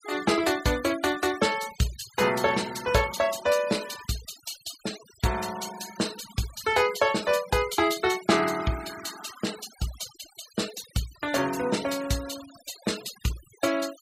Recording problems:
denoising artefacts; signal-to-artefact ratio 14 dB

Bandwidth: 15.5 kHz